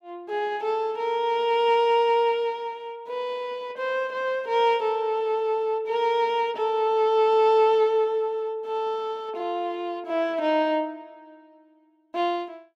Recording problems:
none

